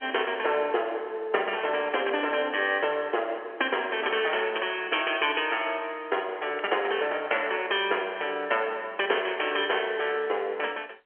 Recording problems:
telephone audio; 320 Hz to 3.3 kHz, G.711

